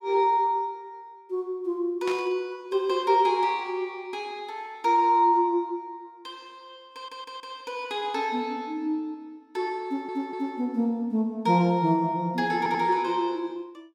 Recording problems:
burst of static; at 2 s; peak -6 dB vs average level
audio stuttering; at 7 s, at 10 s and at 13 s

